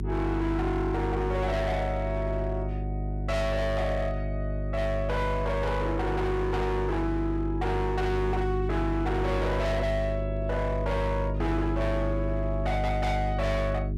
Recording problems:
distorted audio; hard clipping, signal-to-distortion ratio 7 dB
hum; 50 Hz, harmonics up to 400 Hz, SNR 2 dB

